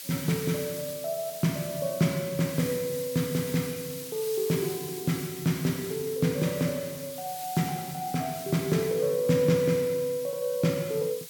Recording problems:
hiss; SNR 10 dB

